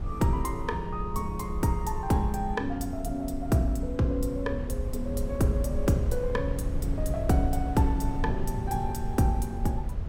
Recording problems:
wind on the microphone; below 86 Hz, SNR 5 dB

